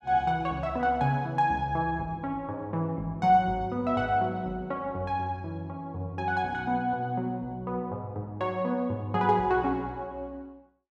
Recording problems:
none

